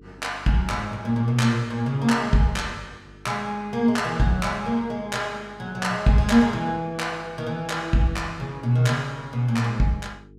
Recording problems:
electrical hum; 50 Hz, harmonics up to 450 Hz, SNR 24 dB

